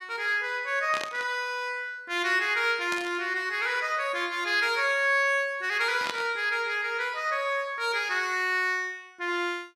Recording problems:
burst of static; at 1 s, at 3 s and at 6 s; peak -2 dB vs average level

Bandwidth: 14.5 kHz